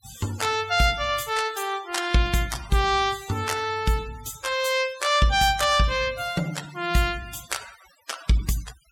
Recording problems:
noise reduction artefacts; signal-to-artefact ratio 17 dB

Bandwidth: 17 kHz